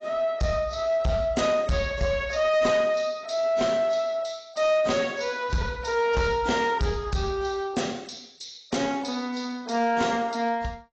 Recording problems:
lossy codec; AAC, log-spectral distance 5 dB, nothing above 7.3 kHz
distorted audio; soft clipping, signal-to-distortion ratio 11 dB

